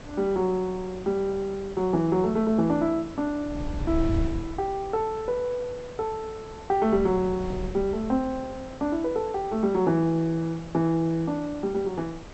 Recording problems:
treble missing; nothing above 7.9 kHz
hiss; slope -5 dB per octave, SNR 18 dB
wind on the microphone; below 120 Hz, SNR 12 dB

